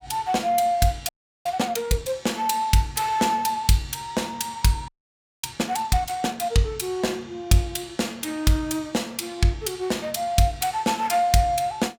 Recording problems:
frozen audio; at 1 s and at 5 s for 0.5 s

